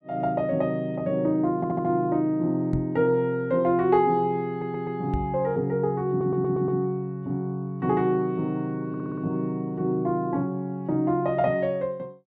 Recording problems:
audio stuttering; 4 times, first at 1.5 s
microphone thump; at 2.5 s and at 5 s; peak 0 dB vs average level

